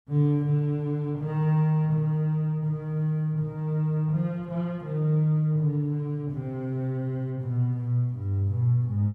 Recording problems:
none

